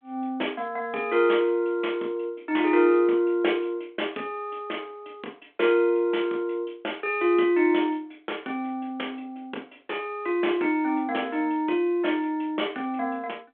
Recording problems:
telephone audio; 260 Hz to 3.5 kHz, G.726

